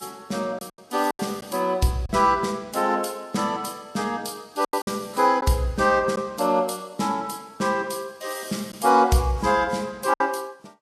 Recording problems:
lossy compression; Vorbis, log-spectral distance 4 dB, nothing above 12.3 kHz
lost packets; 4% of the sound replaced, filled with silence

